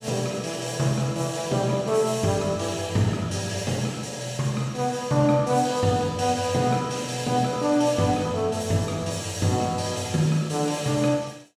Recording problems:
none

